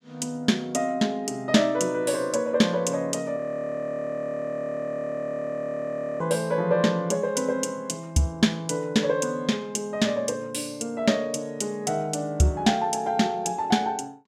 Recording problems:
audio freezing; at 3.5 s for 3 s

